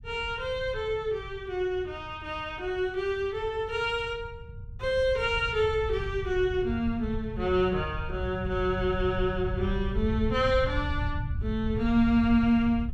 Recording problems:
low-frequency rumble; below 110 Hz, SNR 8 dB

